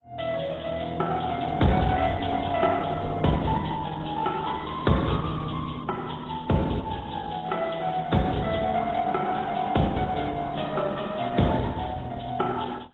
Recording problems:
codec artefacts; AAC, then Opus, log-spectral distance 6 dB, nothing above 3.8 kHz

